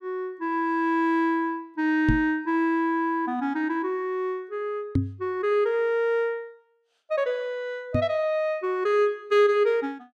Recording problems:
knock on the microphone; at 2 s, at 5 s and at 8 s; peak +5 dB vs average level

